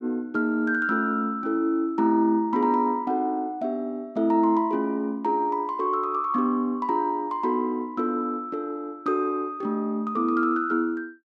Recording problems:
none

